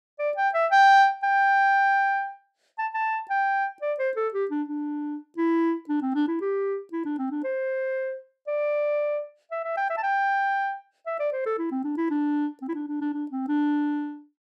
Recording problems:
none

